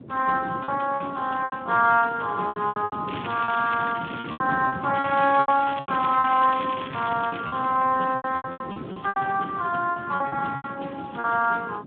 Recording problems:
phone line; 220 Hz to 3.4 kHz, Speex
wind noise; below 370 Hz, SNR 15 dB
lost packets; 13% of the sound replaced, filled with repeated pitch periods
crackling; from 3 to 4.5 s and from 5 to 7.5 s; loose cable, SNR 14 dB

